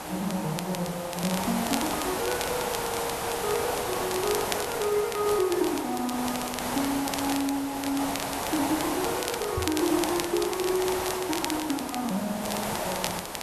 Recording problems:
hiss; SNR 1 dB
crackling; vinyl, SNR 7 dB
microphone bump; at 9.5 s; peak +2 dB vs average level

